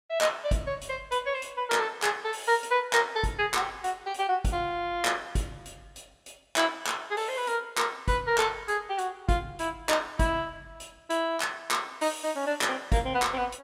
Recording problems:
none

